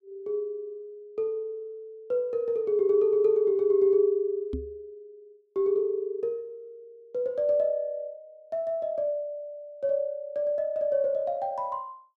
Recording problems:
microphone bump; at 4.5 s; peak -2 dB vs average level

